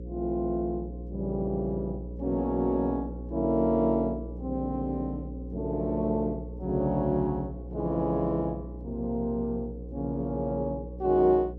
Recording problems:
electrical hum; 60 Hz, harmonics up to 540 Hz, SNR 10 dB

